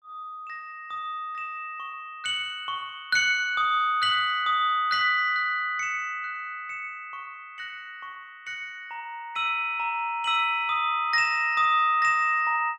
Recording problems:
none

